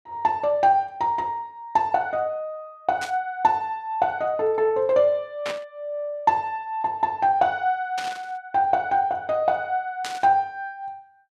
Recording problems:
burst of static; 4 times, first at 3 s; peak -4 dB vs average level

